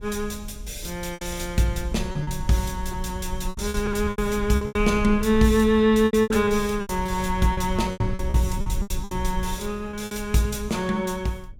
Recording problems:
low-frequency rumble; below 72 Hz, SNR 10 dB
lost packets; 12% of the sound replaced, filled with repeated pitch periods

